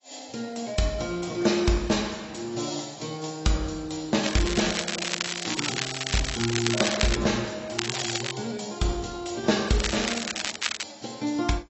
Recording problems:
codec artefacts; AAC, log-spectral distance 12 dB, nothing above 7.6 kHz
crackling; from 4.5 to 7 s, at 8 s and from 10 to 11 s; loose cable, SNR 2 dB

